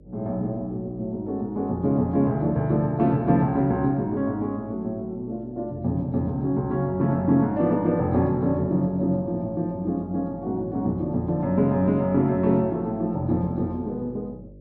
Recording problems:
hum; 50 Hz, harmonics up to 600 Hz, SNR 24 dB

